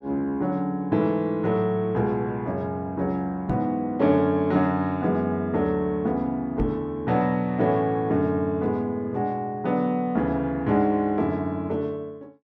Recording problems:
knock on the microphone; at 3.5 s and at 6.5 s; peak +2 dB vs average level

